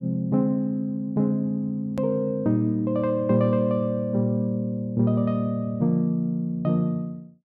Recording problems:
click at an edit; at 2 s

